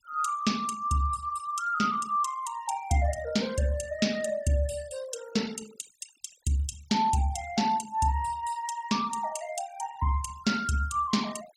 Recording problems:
denoising artefacts; signal-to-artefact ratio 18 dB

